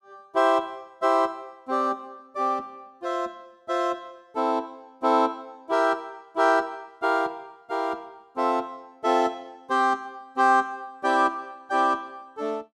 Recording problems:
none

